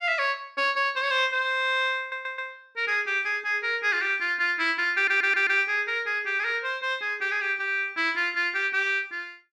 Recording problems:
audio stuttering; at 2 s and at 5 s

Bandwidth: 14 kHz